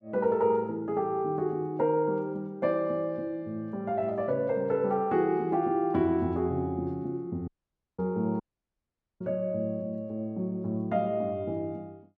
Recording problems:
audio cutting out; at 7.5 s for 0.5 s and at 8.5 s for 1 s

